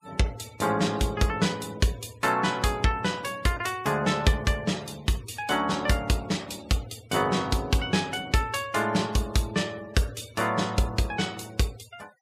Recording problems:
noise reduction artefacts; signal-to-artefact ratio 22 dB

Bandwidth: 15.5 kHz